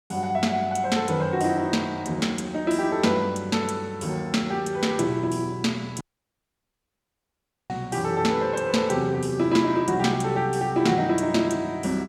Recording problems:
audio cutting out; at 6 s for 1.5 s

